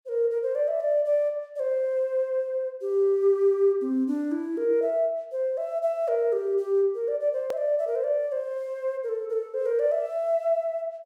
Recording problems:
hard cut with a click; at 7.5 s

